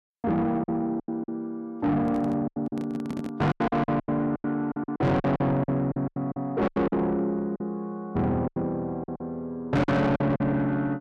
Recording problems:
distorted audio; soft clipping, signal-to-distortion ratio 6 dB
lost packets; 13% of the sound replaced, filled with silence
handling noise; from 2 to 3.5 s; peak -3 dB vs average level

